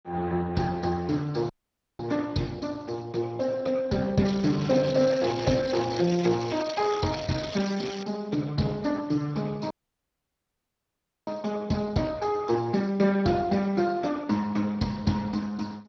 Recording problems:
lossy codec; MP2, then Speex, log-spectral distance 7 dB
dropout; at 1.5 s and at 9.5 s for 1.5 s
crackling; from 4.5 to 8 s; loose cable, SNR 11 dB

